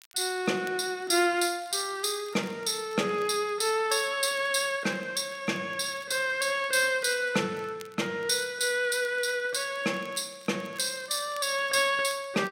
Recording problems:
crackling; vinyl, SNR 27 dB

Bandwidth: 16 kHz